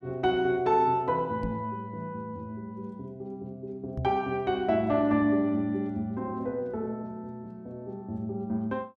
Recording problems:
microphone thump; at 1.5 s and at 4 s; peak -1 dB vs average level

